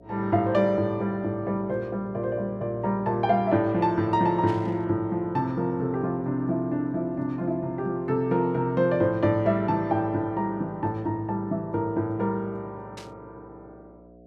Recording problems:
hum; 60 Hz, harmonics up to 720 Hz, SNR 23 dB
static burst; at 4.5 s and at 13 s; peak -12 dB vs average level

